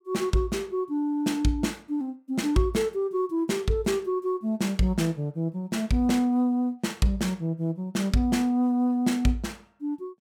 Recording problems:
none

